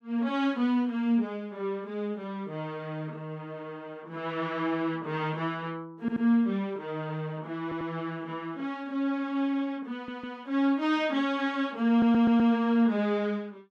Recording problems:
audio stuttering; 4 times, first at 6 s

